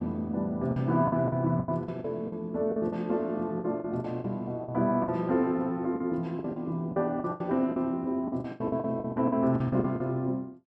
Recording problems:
lost packets; 14% of the sound replaced, filled with the last packet

